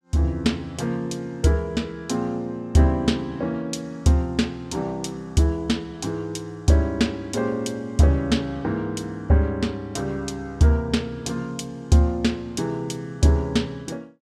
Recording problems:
none

